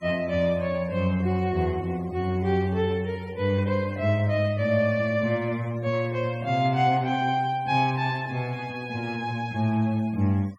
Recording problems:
noise reduction artefacts; signal-to-artefact ratio 25 dB

